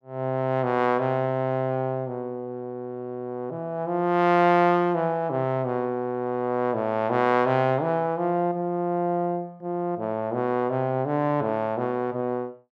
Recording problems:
none

